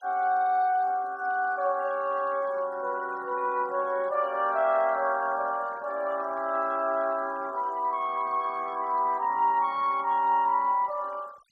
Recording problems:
noise reduction artefacts; signal-to-artefact ratio 25 dB

